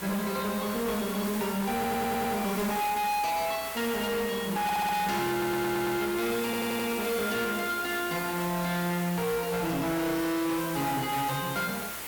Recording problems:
distortion; hard clipping, signal-to-distortion ratio 7 dB
mains hum; 60 Hz, harmonics up to 540 Hz, SNR 25 dB
hiss; slope -1 dB per octave, SNR 8 dB
stutter; 4 times, first at 2 s

